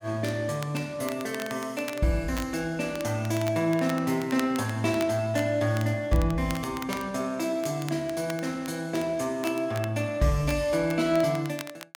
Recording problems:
crackle; vinyl, SNR 16 dB

